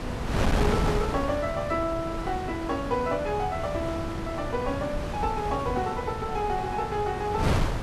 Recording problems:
electrical hum; 60 Hz, harmonics up to 1.1 kHz, SNR 21 dB
wind on the microphone; below 640 Hz, SNR 2 dB

